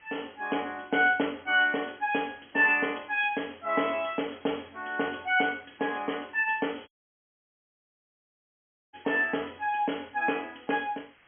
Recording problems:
treble missing; nothing above 3.3 kHz
background hiss; SNR 30 dB
dropout; at 7 s for 2 s

